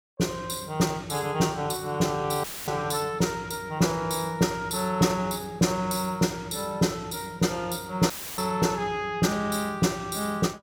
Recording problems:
audio cutting out; at 2.5 s and at 8 s; filled with static

